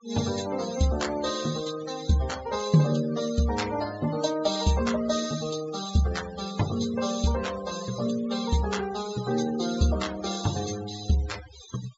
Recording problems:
treble cut off; nothing above 8 kHz
noise reduction artefacts; signal-to-artefact ratio 14 dB

